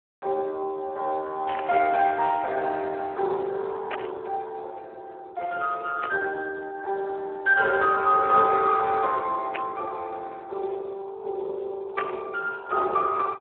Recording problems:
telephone audio; 320 Hz to 2.8 kHz, Speex
static burst; 5 times, first at 1.5 s; peak -2 dB vs average level

